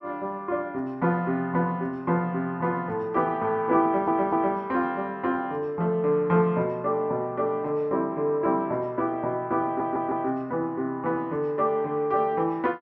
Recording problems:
stutter; at 4 s and at 9.5 s

